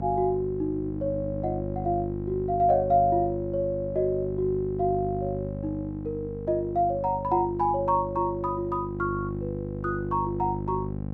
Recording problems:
hum; 50 Hz, harmonics up to 800 Hz, SNR 7 dB

